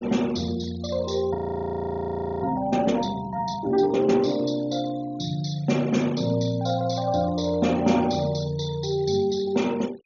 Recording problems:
treble cut off; nothing above 7.1 kHz
noise reduction artefacts; signal-to-artefact ratio 22 dB
frozen audio; at 1.5 s for 1 s

